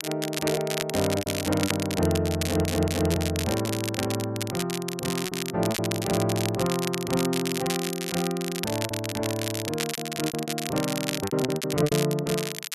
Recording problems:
crackling; vinyl, SNR 5 dB
packet loss; 8% of the sound replaced, filled with repeated pitch periods
stutter; at 2.5 s

